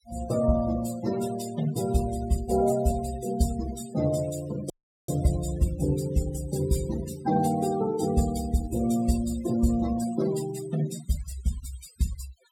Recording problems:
denoising artefacts; signal-to-artefact ratio 13 dB
audio cutting out; at 4.5 s

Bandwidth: 17.5 kHz